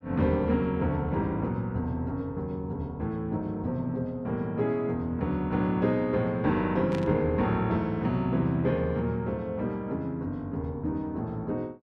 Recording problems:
static burst; at 7 s; peak -8 dB vs average level

